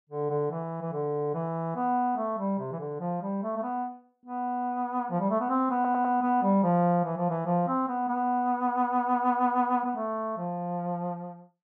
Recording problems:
stutter; at 6 s

